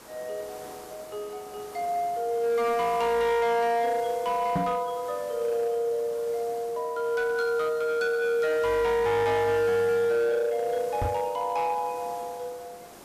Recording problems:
distorted audio; hard clipping, signal-to-distortion ratio 11 dB
background hiss; slope -5 dB per octave, SNR 19 dB
microphone bump; at 4.5 s and at 11 s; peak +2 dB vs average level

